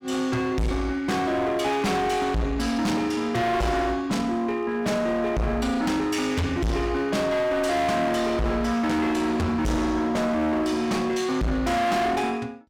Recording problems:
distorted audio; hard clipping, uneven, signal-to-distortion ratio 6 dB

